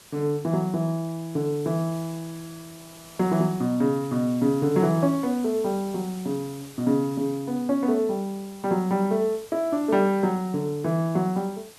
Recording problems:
background hiss; slope -1 dB per octave, SNR 21 dB

